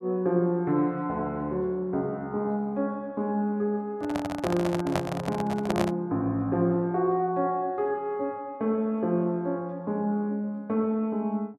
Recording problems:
microphone handling noise; from 4 to 6 s; peak +3 dB vs average level

